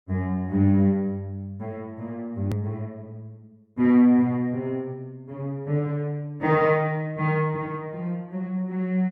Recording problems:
hard cut with a click; at 2.5 s

